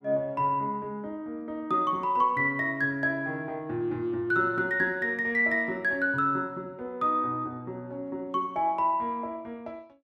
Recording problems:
none

